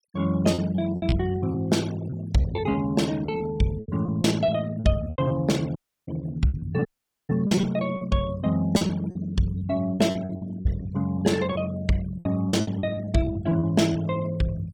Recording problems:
noise reduction artefacts; signal-to-artefact ratio 20 dB
packet loss; 12% of the sound replaced, filled with repeated pitch periods
audio cutting out; at 6 s and at 7 s

